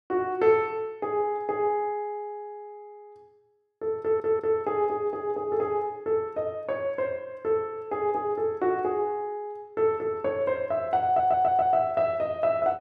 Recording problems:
stutter; at 4 s and at 11 s

